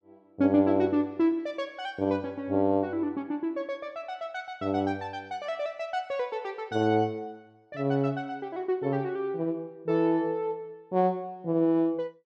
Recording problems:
none

